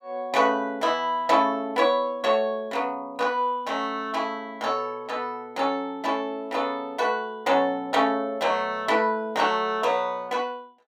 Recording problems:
none

